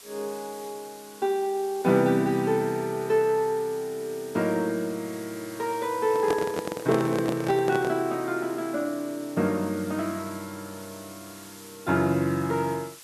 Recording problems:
hiss; slope +1 dB per octave, SNR 19 dB
microphone handling noise; from 6 to 8 s; peak +3 dB vs average level

